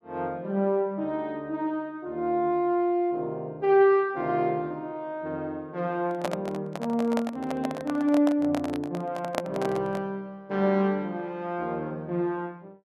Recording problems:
microphone handling noise; from 6 to 10 s; peak +3 dB vs average level

